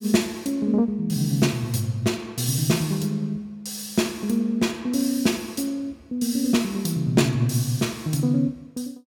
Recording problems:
none

